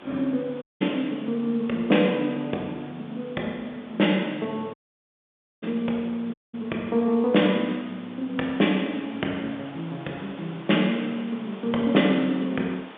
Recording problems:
telephone audio; 240 Hz to 3.6 kHz, G.711
background hiss; SNR 19 dB
dropout; at 0.5 s, at 4.5 s for 1 s and at 6.5 s

